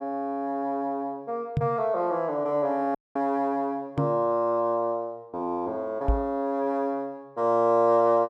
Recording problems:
knock on the microphone; at 1.5 s, at 4 s and at 6 s; peak +5 dB vs average level
audio cutting out; at 3 s

